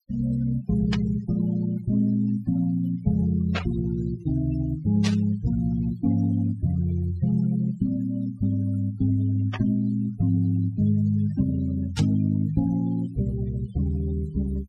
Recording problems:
denoising artefacts; signal-to-artefact ratio 19 dB
static burst; 5 times, first at 1 s; peak -1 dB vs average level

